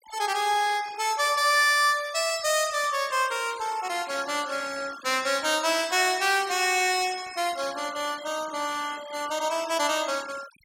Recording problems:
noise reduction artefacts; signal-to-artefact ratio 18 dB

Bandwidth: 16.5 kHz